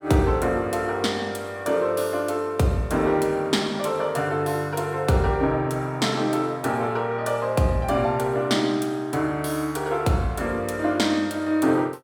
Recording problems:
none

